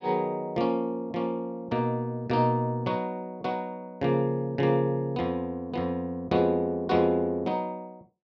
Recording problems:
none

